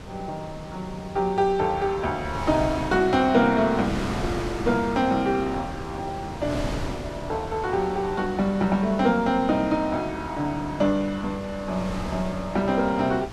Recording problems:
wind on the microphone; below 800 Hz, SNR 11 dB

